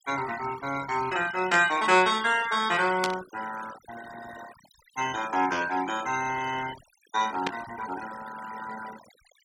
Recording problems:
denoising artefacts; signal-to-artefact ratio 14 dB
burst of static; at 1.5 s, at 3 s and at 7.5 s; peak +1 dB vs average level

